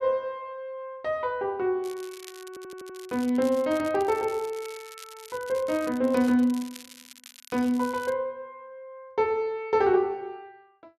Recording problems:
crackle; from 2 to 8 s; loose cable, SNR 19 dB
stutter; at 2.5 s

